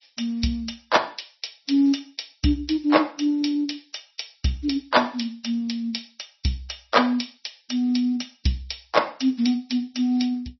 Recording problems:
codec artefacts; MP3, log-spectral distance 6 dB, nothing above 5.8 kHz

